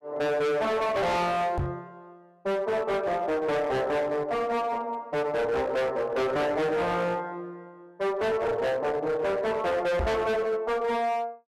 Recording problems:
distorted audio; hard clipping, uneven, signal-to-distortion ratio 6 dB
knock on the microphone; at 1.5 s and at 10 s; peak +1 dB vs average level

